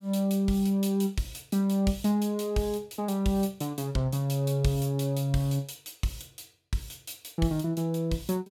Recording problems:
none

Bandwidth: 17.5 kHz